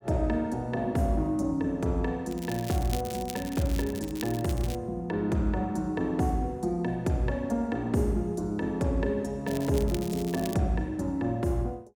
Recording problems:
crackling; from 2.5 to 5 s and from 9.5 to 11 s; loose cable, SNR 13 dB

